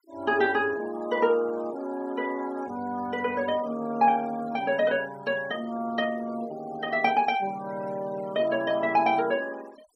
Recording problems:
denoising artefacts; signal-to-artefact ratio 21 dB

